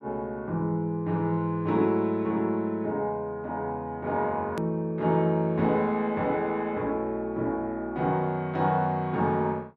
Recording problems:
treble cut off; nothing above 8 kHz
hard cut with a click; at 4.5 s

